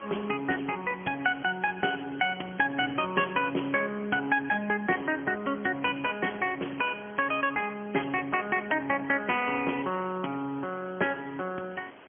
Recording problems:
phone line; 220 Hz to 3.3 kHz, AMR-NB, then MP3
hiss; SNR 22 dB

